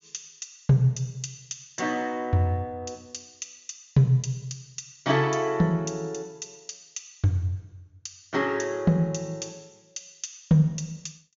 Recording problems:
low-pass filter; nothing above 7.1 kHz

